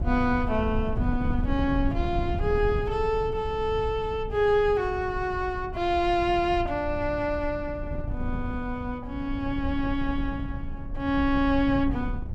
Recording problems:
wind noise; below 110 Hz, SNR 7 dB

